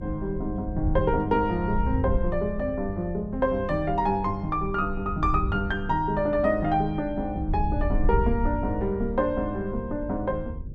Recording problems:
hum; 50 Hz, harmonics up to 550 Hz, SNR 18 dB
wind noise; below 84 Hz, SNR 7 dB

